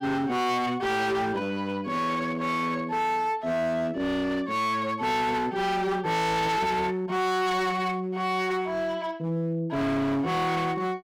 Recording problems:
distorted audio; hard clipping, signal-to-distortion ratio 7 dB

